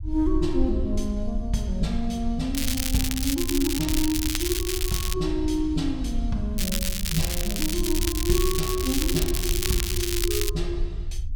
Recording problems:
low-frequency rumble; below 60 Hz, SNR 4 dB
crackling; from 2.5 to 5 s and from 6.5 to 11 s; loose cable, SNR 1 dB

